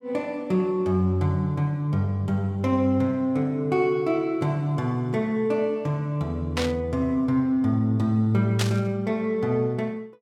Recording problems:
static burst; at 6.5 s and at 8.5 s; peak +1 dB vs average level

